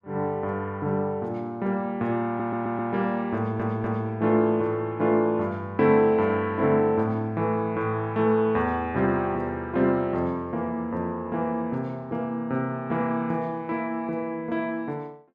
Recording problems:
stutter; at 2.5 s and at 3.5 s

